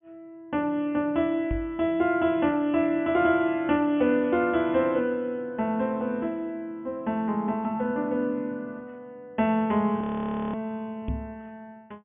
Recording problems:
low-pass filter; nothing above 3.5 kHz
knock on the microphone; at 1.5 s and at 11 s; peak -1 dB vs average level
frozen audio; at 10 s for 0.5 s

